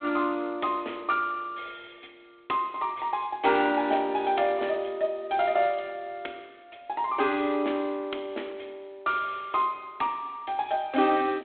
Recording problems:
telephone audio; 240 Hz to 3.7 kHz, G.726

